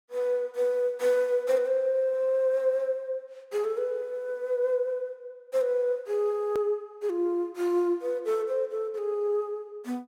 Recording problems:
edit click; at 6.5 s

